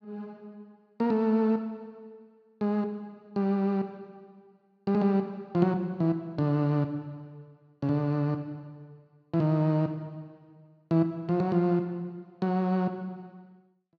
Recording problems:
none

